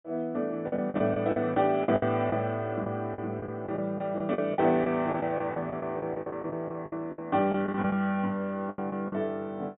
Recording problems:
treble cut off; nothing above 4 kHz
lost packets; 13% of the sound replaced, filled with the last packet

